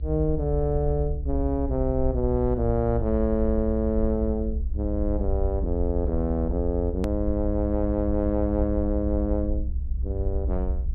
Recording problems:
treble missing; nothing above 4.6 kHz
low-frequency rumble; below 66 Hz, SNR 3 dB
edit click; at 7 s

